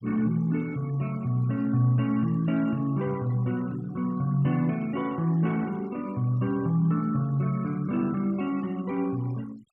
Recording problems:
noise reduction artefacts; signal-to-artefact ratio 24 dB

